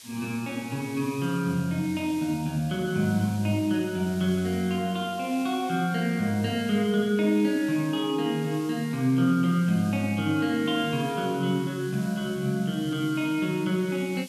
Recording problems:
hiss; slope +3 dB per octave, SNR 19 dB

